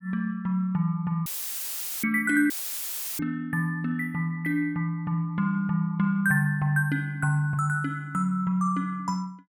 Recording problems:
dropout; at 1.5 s for 1 s and at 2.5 s for 0.5 s; filled with static

